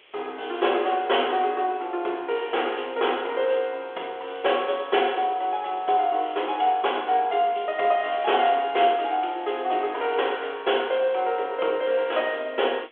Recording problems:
telephone audio; 320 Hz to 3.5 kHz, G.726
background hiss; SNR 26 dB

